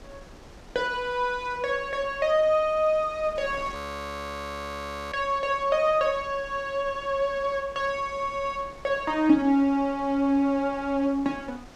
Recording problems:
wind on the microphone; below 1.1 kHz, SNR 20 dB
frozen audio; at 4 s for 1.5 s

